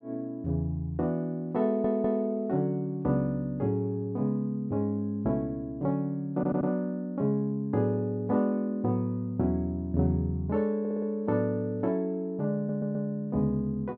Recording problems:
stutter; 4 times, first at 1.5 s

